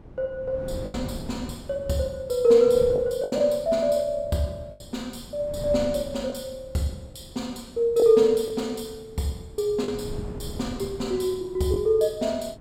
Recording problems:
wind on the microphone; below 270 Hz, SNR 16 dB
lost packets; 3% of the sound replaced, filled with the last packet

